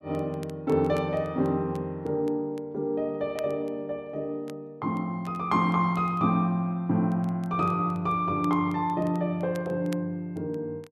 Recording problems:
crackling; vinyl, SNR 27 dB

